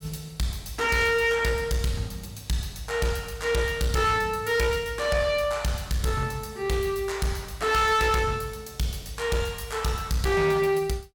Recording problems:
distortion; hard clipping, uneven, signal-to-distortion ratio 10 dB

